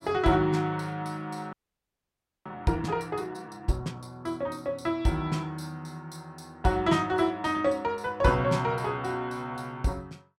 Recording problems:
frozen audio; at 1.5 s for 1 s

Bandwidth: 16 kHz